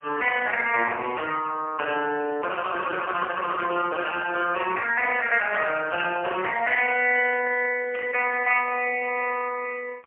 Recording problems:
phone line; 320 Hz to 3.1 kHz, AMR-NB, then MP3
static burst; 4 times, first at 1 s; peak -7 dB vs average level

